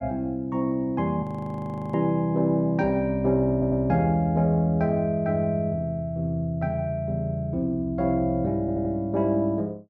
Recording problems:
audio freezing; at 1 s for 0.5 s
stutter; at 3.5 s and at 8.5 s

